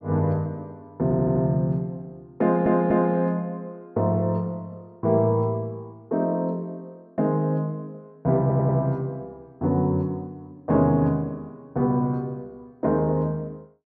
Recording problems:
stutter; at 1 s, at 2.5 s and at 8.5 s

